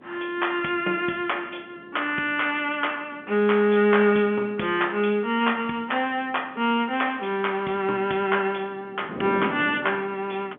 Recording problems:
telephone audio; 220 Hz to 3.4 kHz, G.711
wind on the microphone; below 460 Hz, SNR 18 dB

